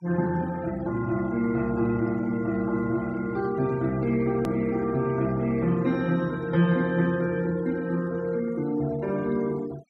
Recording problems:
noise reduction artefacts; signal-to-artefact ratio 22 dB
edit click; at 4.5 s

